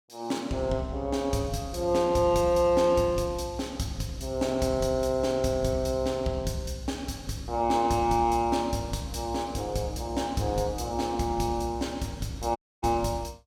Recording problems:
audio cutting out; at 13 s

